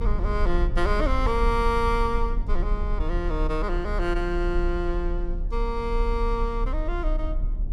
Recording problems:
low-frequency rumble; below 46 Hz, strongest tone 32 Hz, SNR 1 dB

